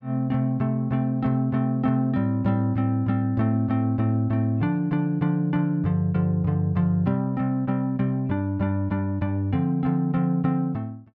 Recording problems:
none

